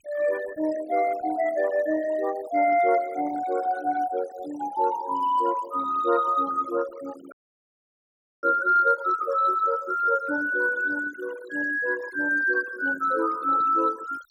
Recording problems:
denoising artefacts; signal-to-artefact ratio 19 dB
audio freezing; at 7.5 s for 1 s

